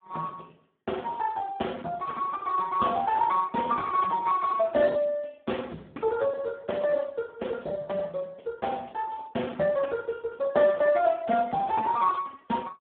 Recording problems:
phone line; 190 Hz to 2.2 kHz, Speex

